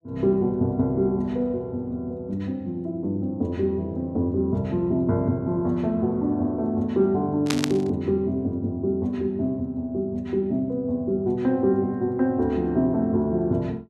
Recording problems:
burst of static; at 7.5 s; peak +2 dB vs average level

